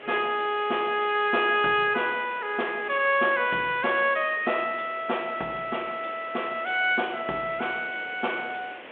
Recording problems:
telephone audio; 240 Hz to 3.4 kHz, G.726
hiss; SNR 18 dB

